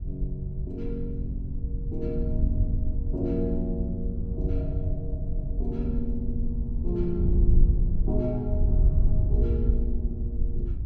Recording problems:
wind noise; below 74 Hz, SNR -4 dB

